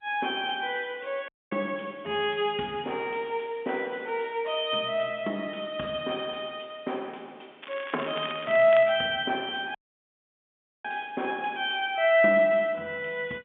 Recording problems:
phone line; 150 Hz to 3.6 kHz, G.711
dropout; at 1.5 s and at 10 s for 1 s
crackle; from 7.5 to 9 s; loose cable, SNR 14 dB

